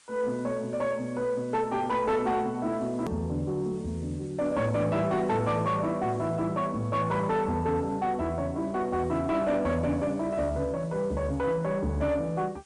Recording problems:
codec artefacts; MP3, log-spectral distance 2 dB, nothing above 13.1 kHz
distortion; soft clipping, signal-to-distortion ratio 11 dB
hiss; slope +1 dB per octave, SNR 28 dB
edit click; at 3 s

